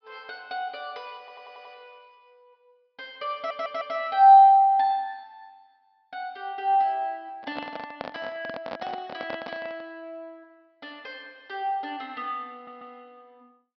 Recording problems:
low-pass filter; nothing above 5.5 kHz
audio stuttering; at 1 s, at 3.5 s and at 13 s
microphone handling noise; from 7.5 to 10 s; peak -6 dB vs average level

